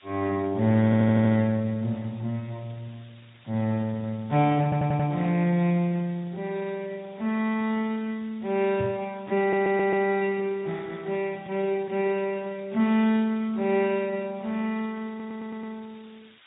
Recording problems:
low-pass filter; nothing above 3.8 kHz
lossy compression; Speex, log-spectral distance 9 dB
hiss; SNR 27 dB
audio stuttering; 4 times, first at 1 s
microphone bump; at 9 s; peak -5 dB vs average level

